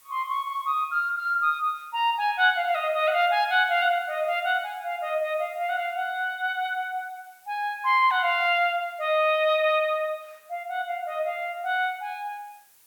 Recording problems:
background hiss; slope +1 dB per octave, SNR 30 dB

